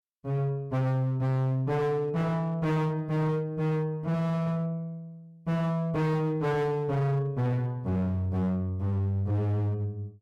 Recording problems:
distortion; hard clipping, signal-to-distortion ratio 7 dB

